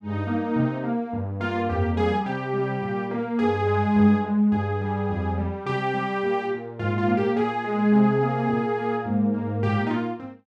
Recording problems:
none

